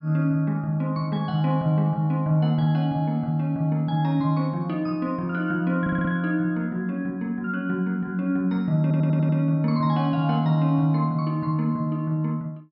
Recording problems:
low-pass filter; nothing above 5.5 kHz
audio stuttering; at 6 s and at 9 s

